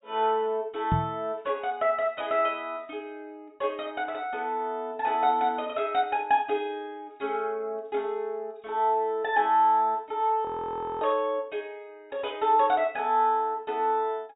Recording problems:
treble cut off; nothing above 4 kHz
knock on the microphone; at 1 s; peak +4 dB vs average level
frozen audio; at 10 s for 0.5 s

